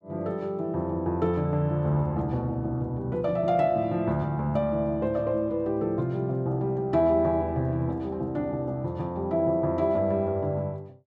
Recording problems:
none

